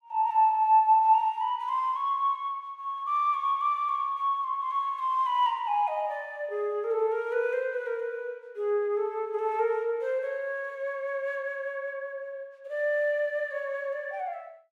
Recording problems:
none

